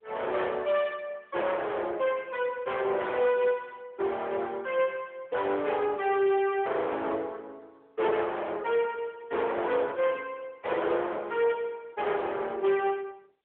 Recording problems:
telephone audio; 340 Hz to 3.4 kHz, AMR-NB
distorted audio; hard clipping, signal-to-distortion ratio 9 dB

